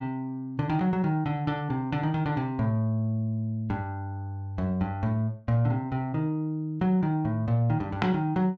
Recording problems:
none

